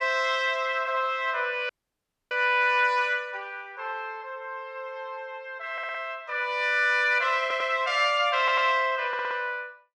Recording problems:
audio cutting out; at 1.5 s for 0.5 s
audio stuttering; 4 times, first at 5.5 s

